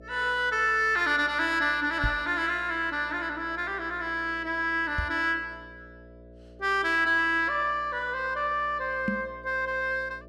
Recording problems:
hum; 60 Hz, harmonics up to 660 Hz, SNR 23 dB
knock on the microphone; at 2 s, at 5 s and at 9 s; peak +1 dB vs average level

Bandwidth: 14.5 kHz